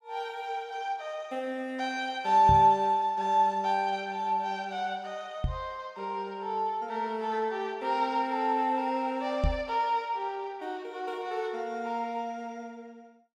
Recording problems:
microphone bump; at 2.5 s, at 5.5 s and at 9.5 s; peak +4 dB vs average level

